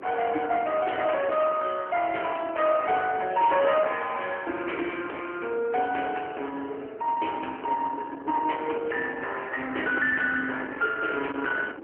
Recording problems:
telephone audio; 260 Hz to 3 kHz, AMR-NB
distorted audio; soft clipping, signal-to-distortion ratio 12 dB
wind noise; below 1.5 kHz, SNR 17 dB

